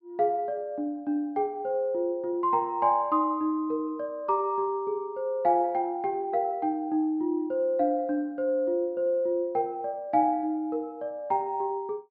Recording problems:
low-pass filter; nothing above 5.5 kHz

